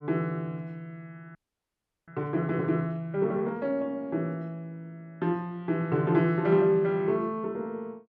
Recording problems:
frozen audio; at 1.5 s for 0.5 s

